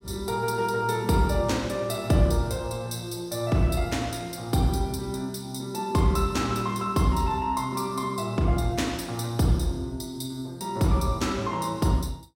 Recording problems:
none

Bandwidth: 16.5 kHz